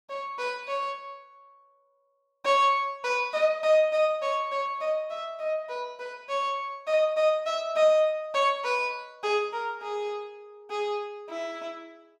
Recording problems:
none

